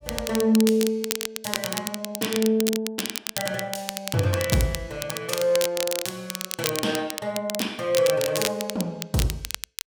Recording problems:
crackling; vinyl, SNR 5 dB

